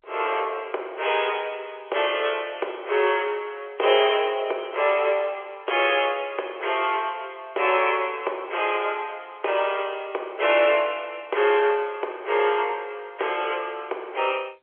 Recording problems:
phone line; 340 Hz to 3.3 kHz, G.711

